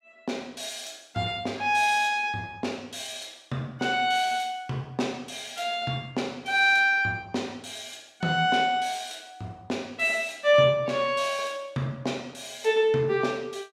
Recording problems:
none

